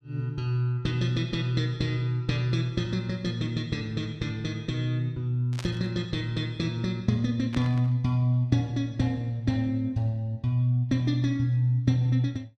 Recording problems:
burst of static; at 5.5 s and at 7.5 s; peak -6 dB vs average level

